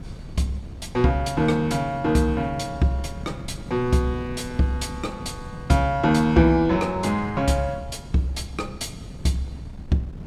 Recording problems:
wind on the microphone; below 200 Hz, SNR 15 dB

